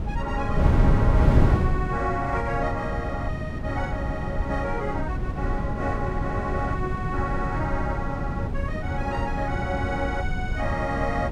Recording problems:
wind on the microphone; below 170 Hz, SNR -2 dB

